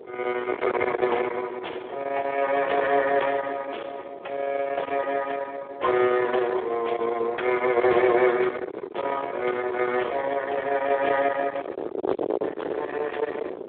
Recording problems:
telephone audio; 300 Hz to 3.5 kHz, Speex
distortion; soft clipping, signal-to-distortion ratio 4 dB
wind on the microphone; below 790 Hz, SNR 10 dB

